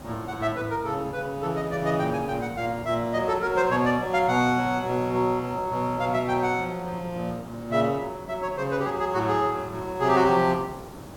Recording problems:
background hiss; SNR 17 dB

